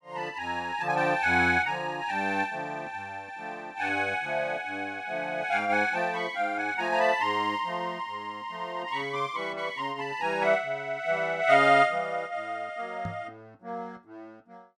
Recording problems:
microphone thump; at 13 s; peak -5 dB vs average level

